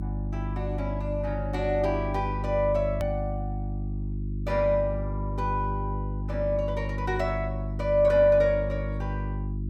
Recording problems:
hum; 50 Hz, harmonics up to 350 Hz, SNR 5 dB
hard cut with a click; at 3 s

